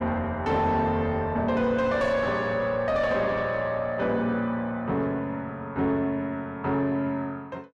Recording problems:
distorted audio; soft clipping, signal-to-distortion ratio 10 dB

